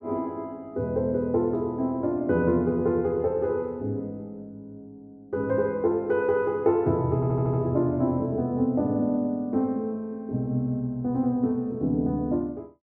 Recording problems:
audio stuttering; at 7 s

